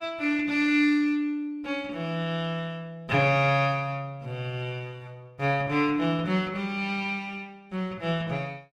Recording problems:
lossy codec; Opus, log-spectral distance 2 dB

